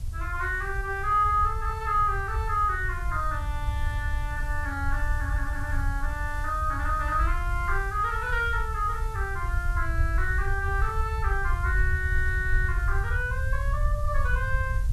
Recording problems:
background hiss; SNR 22 dB
low-frequency rumble; below 74 Hz, SNR 2 dB

